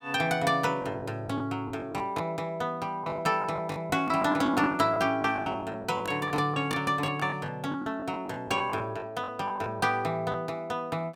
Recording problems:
lost packets; 11% of the sound replaced, filled with the last packet

